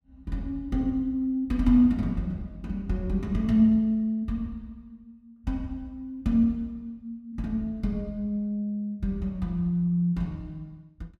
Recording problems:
none

